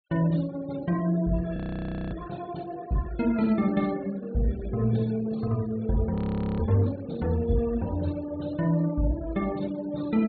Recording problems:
treble missing; nothing above 4.4 kHz
denoising artefacts; signal-to-artefact ratio 21 dB
frozen audio; at 1.5 s for 0.5 s and at 6 s

